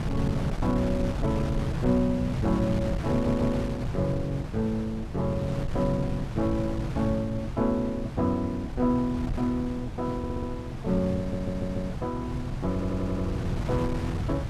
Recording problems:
wind on the microphone; below 180 Hz, SNR 4 dB
audio stuttering; 4 times, first at 3 s

